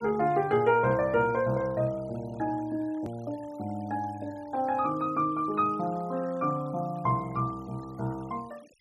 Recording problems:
denoising artefacts; signal-to-artefact ratio 24 dB
click at an edit; at 3 s

